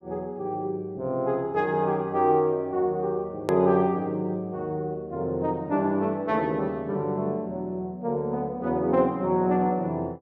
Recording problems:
edit click; at 3.5 s

